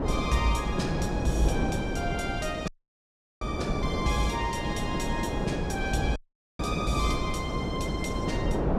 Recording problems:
wind noise; below 460 Hz, SNR 0 dB
audio cutting out; at 2.5 s for 0.5 s and at 6 s

